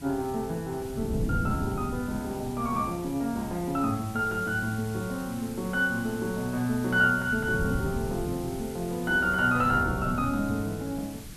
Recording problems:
background hiss; slope +1 dB per octave, SNR 17 dB
wind on the microphone; below 210 Hz, SNR 9 dB

